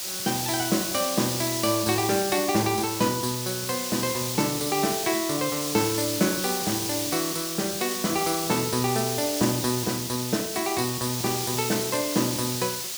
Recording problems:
background hiss; SNR 2 dB

